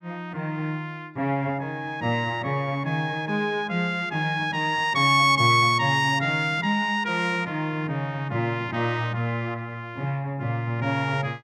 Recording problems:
none

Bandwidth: 16 kHz